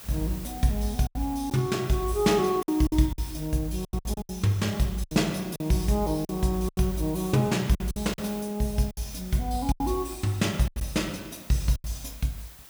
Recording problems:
background hiss; slope -1 dB per octave, SNR 17 dB
lost packets; 9% of the sound replaced, filled with silence

